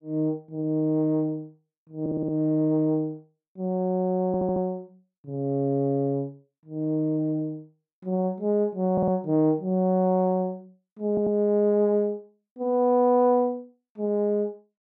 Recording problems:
audio stuttering; 4 times, first at 2 s

